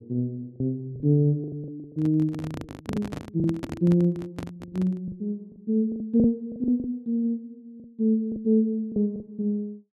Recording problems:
lost packets; 10% of the sound replaced, filled with the last packet
microphone handling noise; from 2 to 5 s; peak -2 dB vs average level

